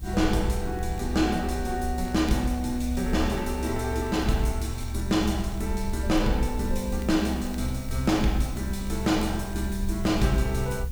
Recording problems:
hiss; SNR 22 dB
rumble; below 68 Hz, SNR 6 dB
crackling; vinyl, SNR 28 dB

